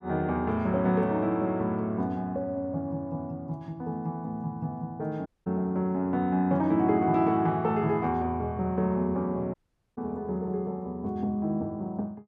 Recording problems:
dropout; at 5.5 s and at 9.5 s

